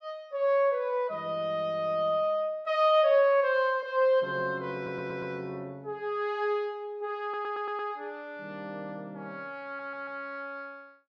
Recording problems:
stutter; at 5 s, at 7 s and at 9.5 s

